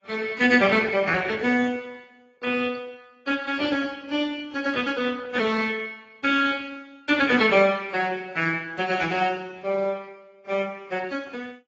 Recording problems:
lossy compression; Speex, then AAC, log-spectral distance 4 dB, nothing above 7.3 kHz

